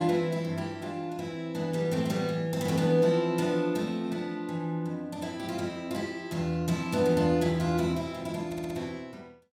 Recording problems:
stutter; at 8.5 s

